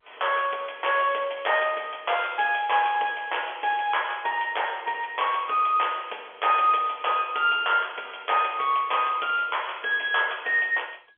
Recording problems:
phone line; 340 Hz to 3.4 kHz, G.711

